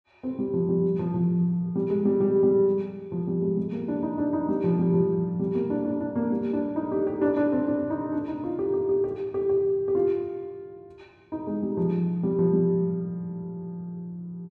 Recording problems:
none

